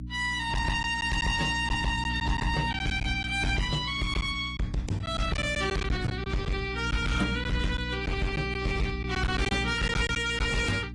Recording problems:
codec artefacts; AAC, then AAC, log-spectral distance 4 dB, nothing above 10.4 kHz
distorted audio; hard clipping, uneven, signal-to-distortion ratio 6 dB
electrical hum; 60 Hz, harmonics up to 300 Hz, SNR 8 dB
packet loss; 5% of the sound replaced, filled with silence

